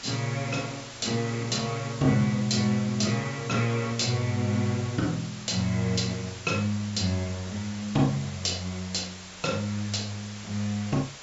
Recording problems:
treble missing; nothing above 8 kHz
hiss; slope 0 dB per octave, SNR 13 dB

